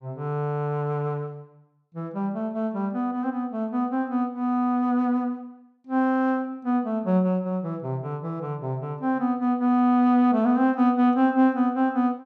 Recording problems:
none

